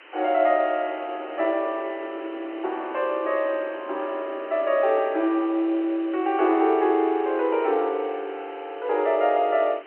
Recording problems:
phone line; 280 Hz to 3.2 kHz, G.711
background hiss; SNR 22 dB
wind on the microphone; below 520 Hz, SNR 20 dB

